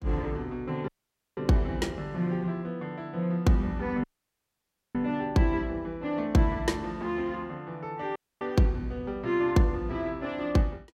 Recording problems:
dropout; at 1 s, at 4 s for 1 s and at 8 s

